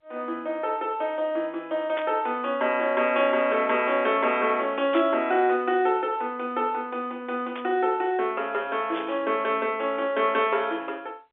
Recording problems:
telephone audio; 300 Hz to 3.6 kHz, G.711
burst of static; 4 times, first at 2 s; peak -7 dB vs average level

